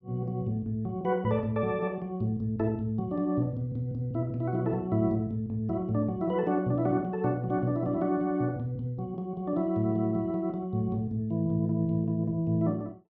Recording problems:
low-pass filter; nothing above 6.3 kHz

